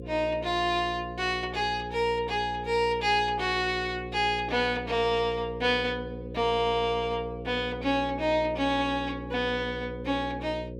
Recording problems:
electrical hum; 60 Hz, harmonics up to 540 Hz, SNR 12 dB

